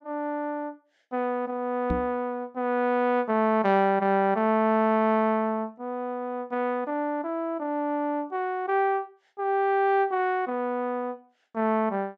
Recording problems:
microphone thump; at 2 s; peak 0 dB vs average level

